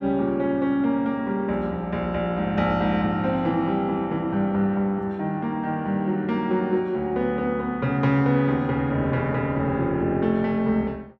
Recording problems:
none

